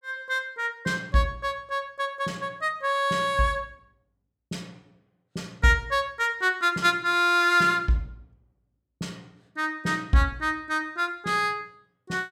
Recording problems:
none

